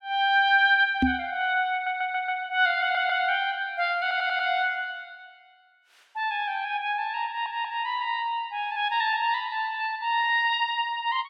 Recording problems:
microphone bump; at 1 s; peak +5 dB vs average level
stutter; 4 times, first at 1.5 s

